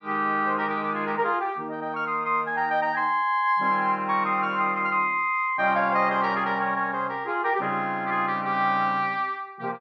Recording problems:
none

